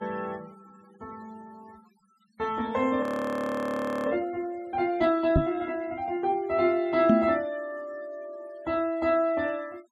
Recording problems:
noise reduction artefacts; signal-to-artefact ratio 26 dB
frozen audio; at 3 s for 1 s
microphone thump; at 5.5 s and at 7 s; peak +8 dB vs average level

